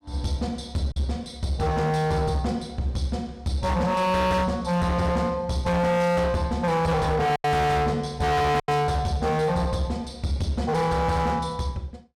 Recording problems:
distorted audio; hard clipping, uneven, signal-to-distortion ratio 6 dB
packet loss; 1.7% of the sound replaced, filled with silence

